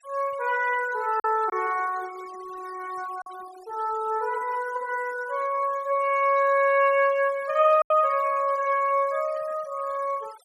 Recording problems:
noise reduction artefacts; signal-to-artefact ratio 23 dB
packet loss; 1.7% of the sound replaced, filled with silence

